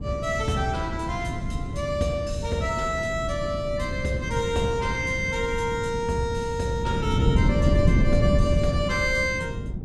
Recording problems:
wind noise; below 200 Hz, SNR 1 dB

